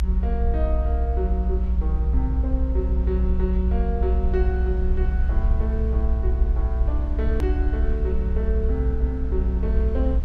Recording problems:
low-frequency rumble; below 62 Hz, strongest tone 60 Hz, SNR -6 dB
click at an edit; at 7.5 s

